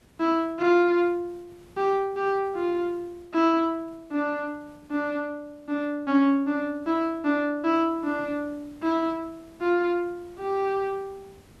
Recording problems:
background hiss; slope -5 dB per octave, SNR 29 dB

